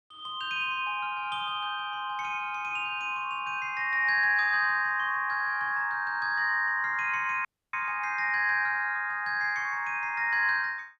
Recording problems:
audio cutting out; at 7.5 s

